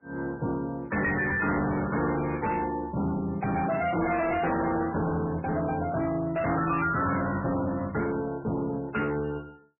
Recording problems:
codec artefacts; MP3, log-spectral distance 4 dB, nothing above 2.5 kHz
distortion; hard clipping, signal-to-distortion ratio 6 dB

